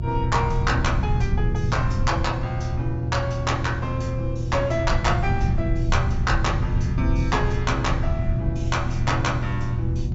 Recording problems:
low-pass filter; nothing above 8 kHz
mains hum; 60 Hz, harmonics up to 360 Hz, SNR 2 dB
rumble; below 110 Hz, SNR 0 dB

